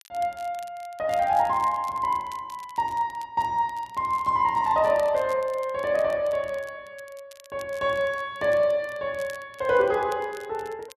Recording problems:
crackling; vinyl, SNR 25 dB

